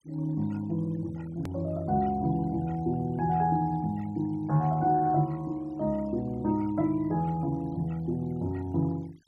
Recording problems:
denoising artefacts; signal-to-artefact ratio 26 dB
click at an edit; at 1.5 s

